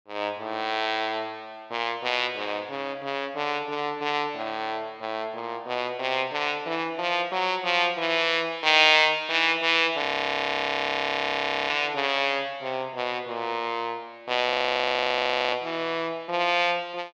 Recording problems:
frozen audio; at 10 s for 1.5 s and at 14 s for 1 s

